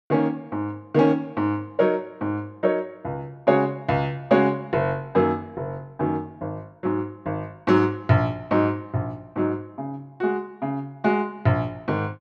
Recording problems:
none

